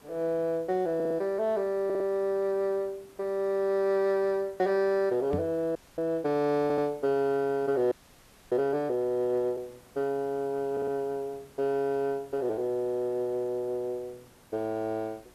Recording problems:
hiss; slope -4 dB per octave, SNR 27 dB
audio stuttering; 4 times, first at 1 s
microphone bump; at 5.5 s; peak 0 dB vs average level
frozen audio; at 6 s and at 8 s for 0.5 s

